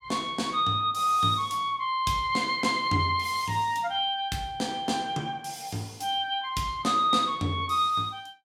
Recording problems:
none

